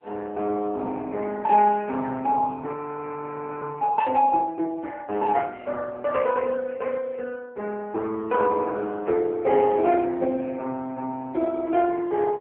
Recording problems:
phone line; 280 Hz to 2.6 kHz, AMR-NB
frozen audio; at 2.5 s for 1 s

